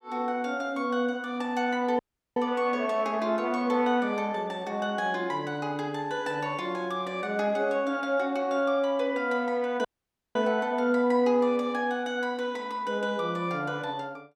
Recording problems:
dropout; at 2 s and at 10 s for 0.5 s

